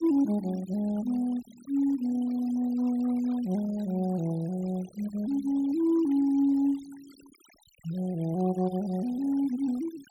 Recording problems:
noise reduction artefacts; signal-to-artefact ratio 24 dB

